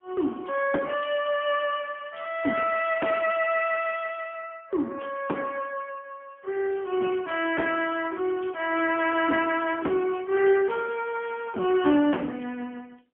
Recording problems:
phone line; 220 Hz to 3.2 kHz, AMR-NB, then MP3

